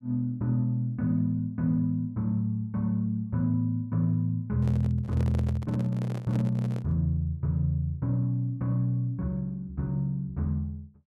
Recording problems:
handling noise; from 4.5 to 7 s; peak -7 dB vs average level

